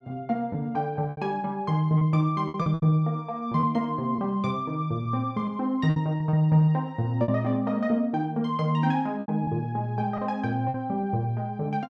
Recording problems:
lost packets; 7% of the sound replaced, filled with repeated pitch periods

